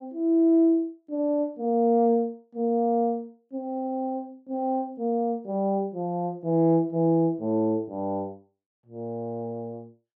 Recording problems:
none

